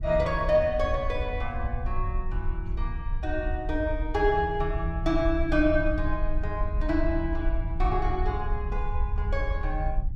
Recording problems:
rumble; below 64 Hz, SNR 3 dB

